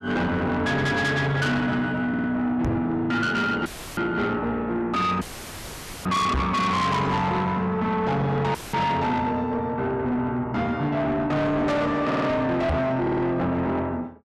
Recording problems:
distortion; soft clipping, signal-to-distortion ratio 6 dB
stutter; at 2 s, at 12 s and at 13 s
microphone bump; at 2.5 s, at 6.5 s and at 13 s; peak +4 dB vs average level
audio cutting out; at 3.5 s, at 5 s for 1 s and at 8.5 s; filled with static

